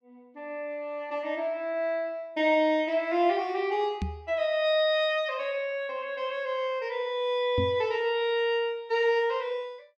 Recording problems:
microphone thump; at 4 s and at 7.5 s; peak +1 dB vs average level

